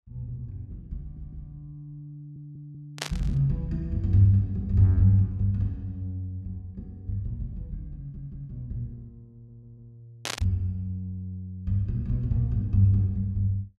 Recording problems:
stutter; 4 times, first at 1 s
burst of static; at 3 s and at 10 s; peak +1 dB vs average level

